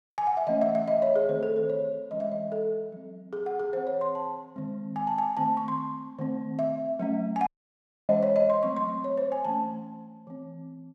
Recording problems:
audio cutting out; at 7.5 s for 0.5 s

